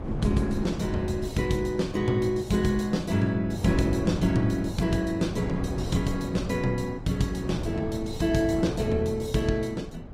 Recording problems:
codec artefacts; Opus, log-spectral distance 3 dB, nothing above 18.9 kHz
hum; 50 Hz, harmonics up to 550 Hz, SNR 20 dB
wind on the microphone; below 280 Hz, SNR 9 dB

